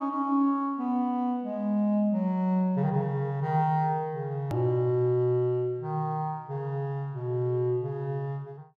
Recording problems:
click at an edit; at 4.5 s

